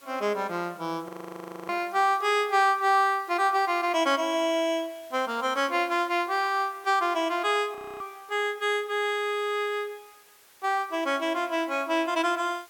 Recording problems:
background hiss; slope 0 dB per octave, SNR 27 dB
frozen audio; at 1 s for 0.5 s and at 8 s

